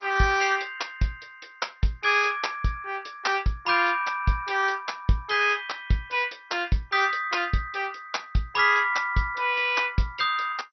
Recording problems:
lossy compression; MP2, then MP2, log-spectral distance 5 dB, nothing above 5.8 kHz

